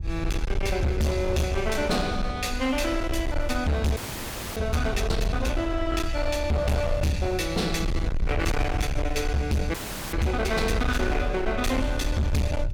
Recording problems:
distortion; hard clipping, signal-to-distortion ratio 7 dB
low-frequency rumble; below 84 Hz, SNR 5 dB
frozen audio; at 4 s for 0.5 s and at 9.5 s

